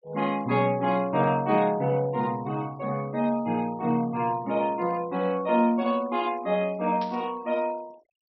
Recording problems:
low-pass filter; nothing above 5.7 kHz
noise reduction artefacts; signal-to-artefact ratio 24 dB
static burst; at 7 s; peak -11 dB vs average level

